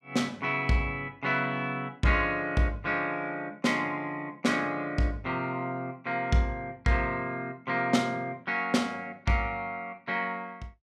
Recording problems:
none

